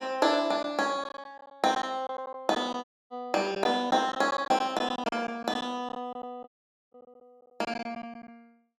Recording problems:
packet loss; 9% of the sound replaced, filled with silence
dropout; at 3 s and at 6.5 s

